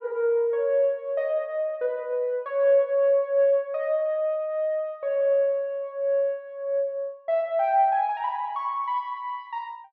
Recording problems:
none

